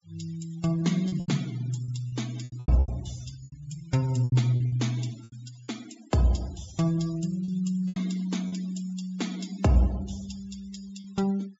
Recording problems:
treble cut off; nothing above 8 kHz
noise reduction artefacts; signal-to-artefact ratio 18 dB
lost packets; 9% of the sound replaced, filled with repeated pitch periods

